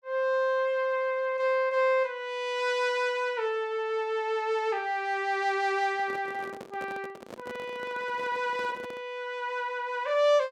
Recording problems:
microphone handling noise; from 6 to 9 s; peak -9 dB vs average level

